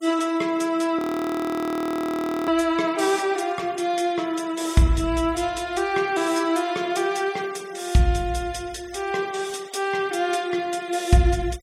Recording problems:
noise reduction artefacts; signal-to-artefact ratio 22 dB
frozen audio; at 1 s for 1.5 s

